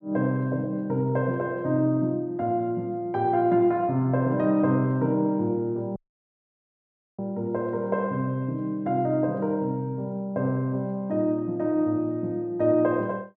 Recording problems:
dropout; at 6 s for 1 s

